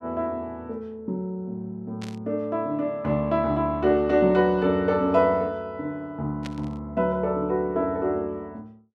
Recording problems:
static burst; at 2 s and at 6.5 s; peak -9 dB vs average level

